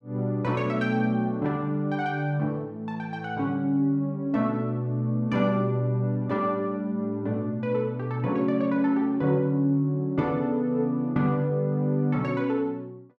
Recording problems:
none

